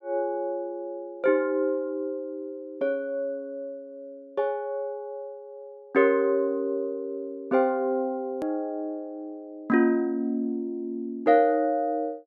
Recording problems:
click at an edit; at 8.5 s

